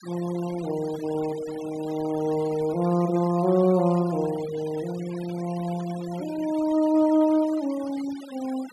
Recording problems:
denoising artefacts; signal-to-artefact ratio 19 dB

